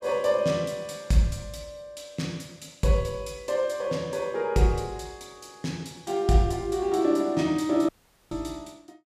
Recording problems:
audio cutting out; at 8 s

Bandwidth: 15 kHz